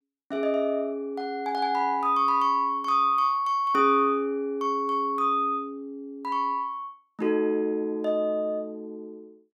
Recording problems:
none

